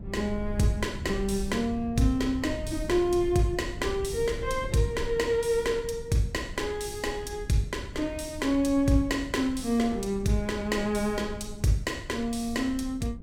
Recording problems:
rumble; below 100 Hz, SNR 12 dB

